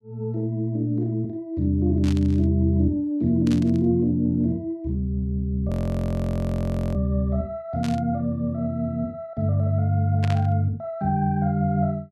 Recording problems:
static burst; 4 times, first at 2 s; peak -7 dB vs average level
audio freezing; at 5.5 s for 1.5 s

